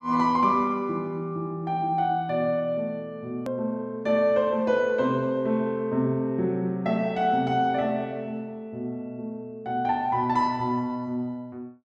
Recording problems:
edit click; at 3.5 s

